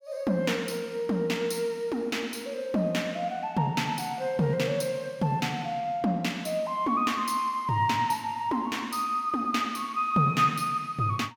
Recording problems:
none

